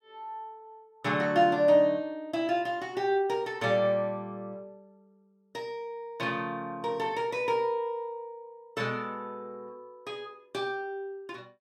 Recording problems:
none

